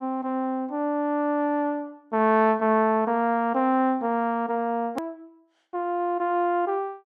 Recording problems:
edit click; at 5 s

